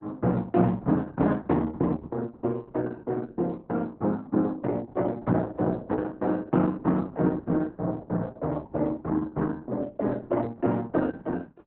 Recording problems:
codec artefacts; Opus, log-spectral distance 3 dB, nothing above 4 kHz

